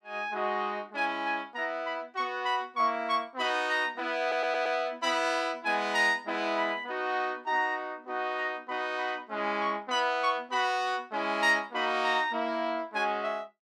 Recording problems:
audio stuttering; at 4 s

